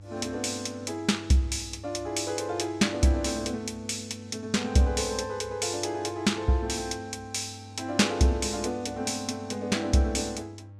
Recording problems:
hum; 50 Hz, harmonics up to 600 Hz, SNR 19 dB

